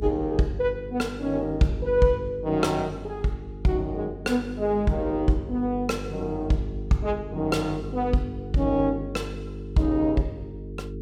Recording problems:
hum; 50 Hz, harmonics up to 450 Hz, SNR 11 dB

